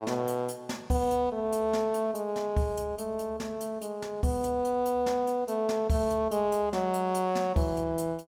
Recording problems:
none

